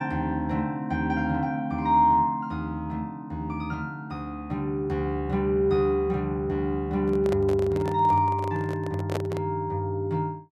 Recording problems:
handling noise; from 7 to 9.5 s; peak -1 dB vs average level

